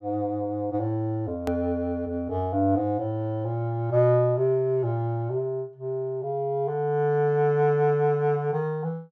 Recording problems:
click at an edit; at 1.5 s

